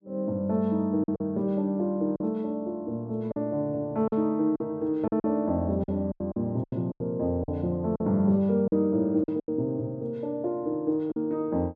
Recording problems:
lost packets; 8% of the sound replaced, filled with silence

